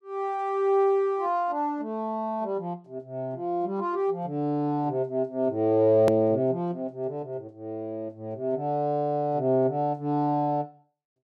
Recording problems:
click at an edit; at 6 s

